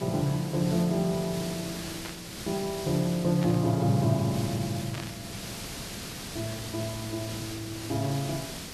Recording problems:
background hiss; SNR 9 dB
burst of static; at 2 s, at 3.5 s and at 5 s; peak -7 dB vs average level

